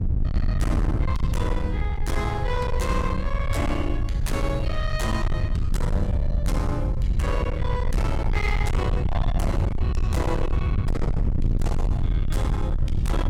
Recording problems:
distorted audio; hard clipping, signal-to-distortion ratio 6 dB
hum; 50 Hz, harmonics up to 450 Hz, SNR 17 dB
low-frequency rumble; below 100 Hz, SNR -4 dB

